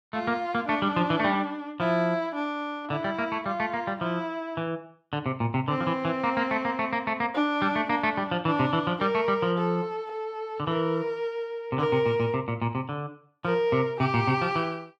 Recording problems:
none

